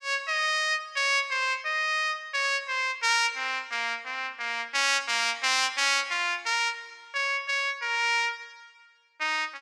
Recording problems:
none

